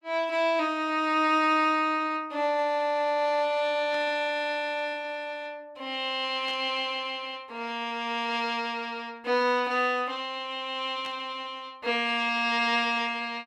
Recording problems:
burst of static; at 4 s, at 6.5 s and at 11 s; peak -12 dB vs average level

